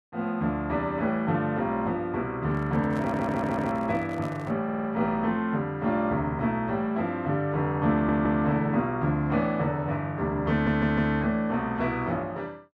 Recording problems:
microphone handling noise; from 2.5 to 4.5 s; peak -8 dB vs average level
stutter; 4 times, first at 3 s

